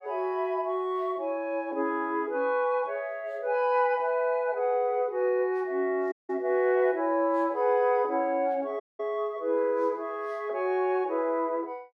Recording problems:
dropout; at 6 s and at 9 s

